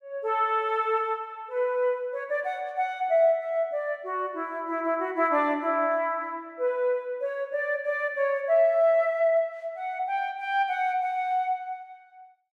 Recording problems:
none

